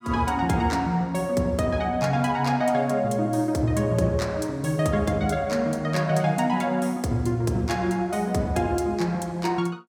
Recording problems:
none

